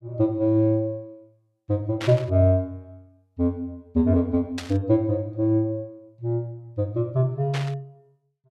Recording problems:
burst of static; at 2 s, at 4.5 s and at 7.5 s; peak -5 dB vs average level

